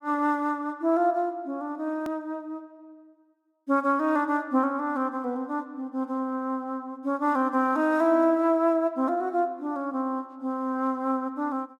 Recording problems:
click at an edit; at 2 s

